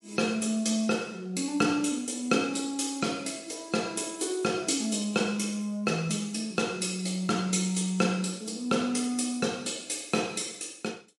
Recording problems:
codec artefacts; MP3, log-spectral distance 5 dB, nothing above 11 kHz

